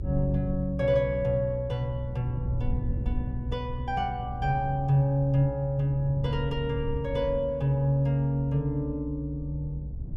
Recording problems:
rumble; below 92 Hz, SNR 8 dB

